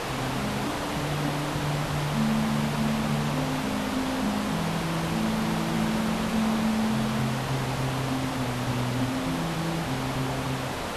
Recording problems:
background hiss; SNR 1 dB

